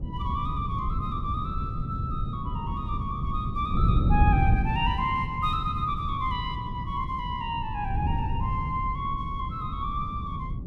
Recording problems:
wind on the microphone; below 140 Hz, SNR -1 dB

